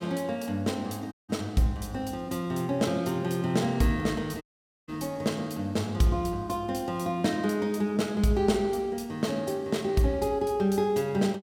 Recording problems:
audio cutting out; at 1 s and at 4.5 s

